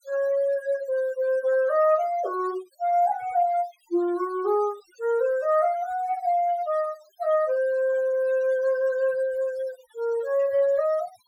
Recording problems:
noise reduction artefacts; signal-to-artefact ratio 23 dB

